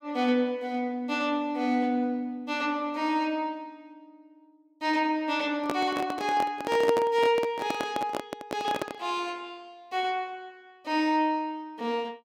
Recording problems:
microphone handling noise; from 5.5 to 9 s; peak +3 dB vs average level

